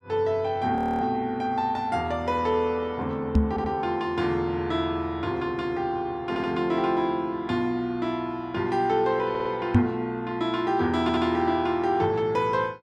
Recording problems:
frozen audio; at 1 s
knock on the microphone; at 3.5 s and at 10 s; peak +10 dB vs average level
stutter; 4 times, first at 3.5 s

